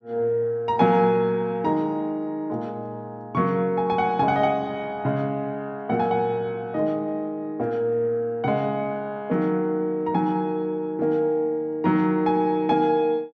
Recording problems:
none

